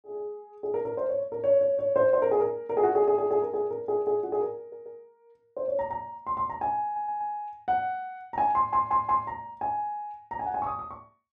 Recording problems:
stutter; at 4.5 s, at 7 s and at 8.5 s

